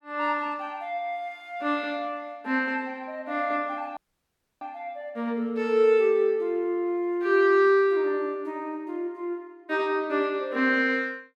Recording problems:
dropout; at 4 s for 0.5 s

